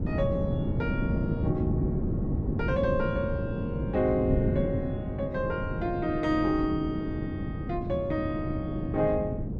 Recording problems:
wind noise; below 250 Hz, SNR 0 dB

